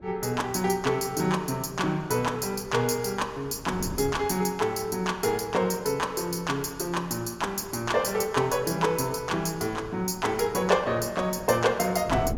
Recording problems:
wind noise; below 310 Hz, SNR 18 dB

